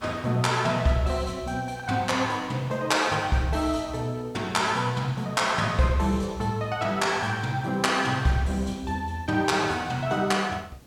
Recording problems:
background hiss; slope -4 dB per octave, SNR 27 dB

